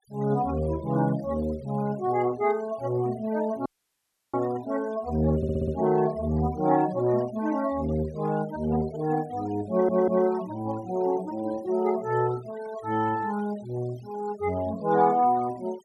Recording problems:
denoising artefacts; signal-to-artefact ratio 20 dB
audio cutting out; at 3.5 s for 0.5 s
stutter; at 5.5 s and at 9.5 s

